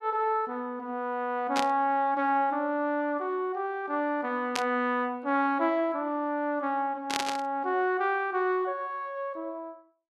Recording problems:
static burst; at 1.5 s, at 4.5 s and at 7 s; peak +3 dB vs average level

